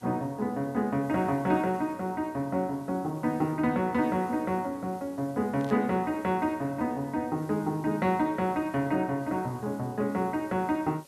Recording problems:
background hiss; slope +1 dB per octave, SNR 27 dB
static burst; at 5.5 s; peak -15 dB vs average level

